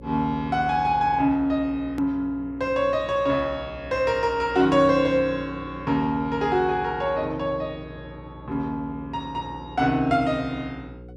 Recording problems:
hum; 60 Hz, harmonics up to 540 Hz, SNR 19 dB
edit click; at 2 s

